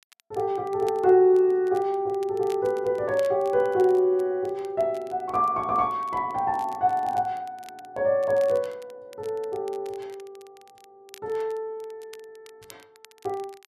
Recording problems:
crackling; vinyl, SNR 28 dB

